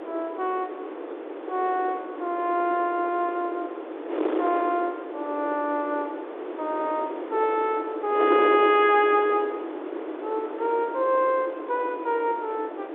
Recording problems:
phone line; 300 Hz to 3.7 kHz, G.711
wind on the microphone; below 620 Hz, SNR 7 dB

